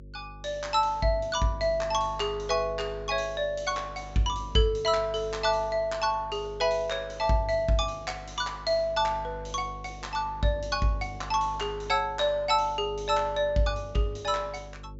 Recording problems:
treble cut off; nothing above 7.6 kHz
mains hum; 50 Hz, harmonics up to 550 Hz, SNR 16 dB

